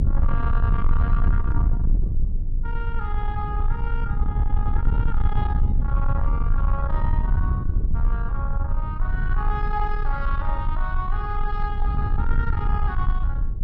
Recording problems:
distortion; soft clipping, signal-to-distortion ratio 10 dB
rumble; below 66 Hz, strongest tone 26 Hz, SNR -7 dB
microphone thump; at 1.5 s; peak +2 dB vs average level

